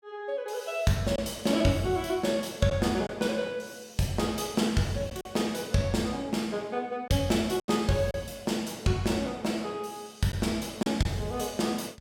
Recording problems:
lost packets; 2% of the sound replaced, filled with silence

